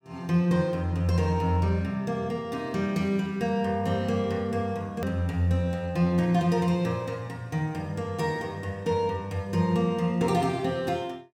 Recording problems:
edit click; at 5 s

